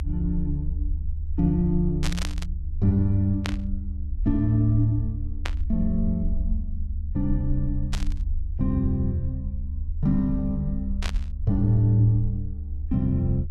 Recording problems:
low-frequency rumble; below 74 Hz, SNR 6 dB
static burst; 5 times, first at 2 s; peak -1 dB vs average level

